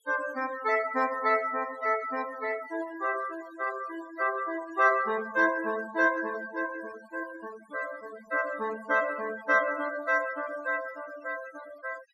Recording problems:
noise reduction artefacts; signal-to-artefact ratio 17 dB

